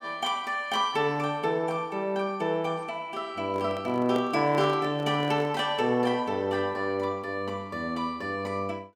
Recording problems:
handling noise; from 3.5 to 5.5 s; peak -2 dB vs average level

